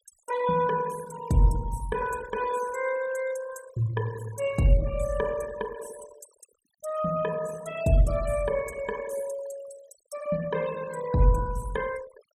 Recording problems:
noise reduction artefacts; signal-to-artefact ratio 16 dB

